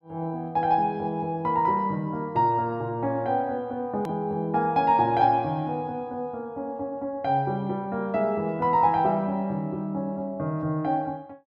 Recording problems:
hard cut with a click; at 4 s

